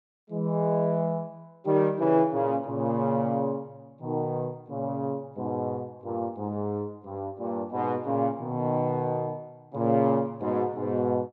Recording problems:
none

